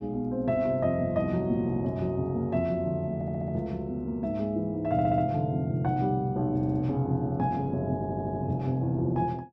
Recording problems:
audio stuttering; 4 times, first at 3 s

